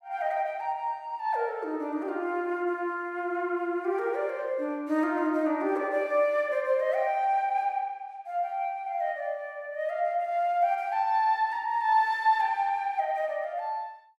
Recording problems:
none

